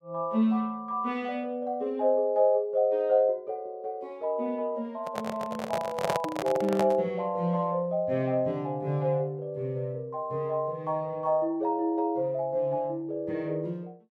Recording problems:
microphone handling noise; from 5 to 7 s; peak +4 dB vs average level

